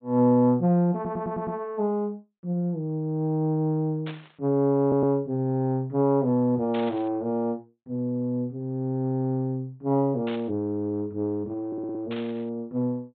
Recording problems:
treble cut off; nothing above 4 kHz
stutter; at 1 s, at 5 s and at 12 s
static burst; 4 times, first at 4 s; peak -9 dB vs average level

